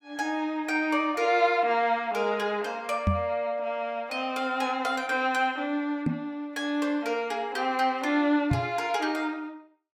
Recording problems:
microphone bump; at 3 s, at 6 s and at 8.5 s; peak +5 dB vs average level

